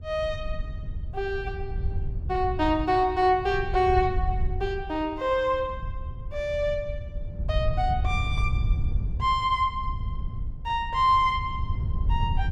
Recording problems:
wind noise; below 90 Hz, SNR 6 dB

